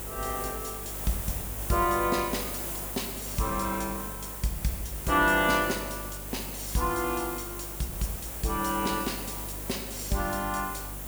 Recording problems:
electrical hum; 50 Hz, harmonics up to 350 Hz, SNR 13 dB
background hiss; slope -5 dB per octave, SNR 5 dB

